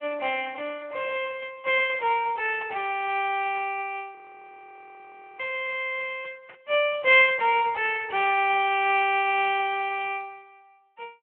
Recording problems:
telephone audio; 300 Hz to 3.4 kHz, Speex
burst of static; at 3.5 s, at 6.5 s and at 8 s; peak -17 dB vs average level
frozen audio; at 4 s for 1 s

